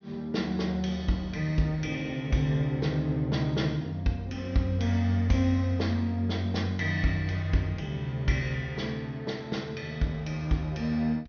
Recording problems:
low-pass filter; nothing above 6.4 kHz

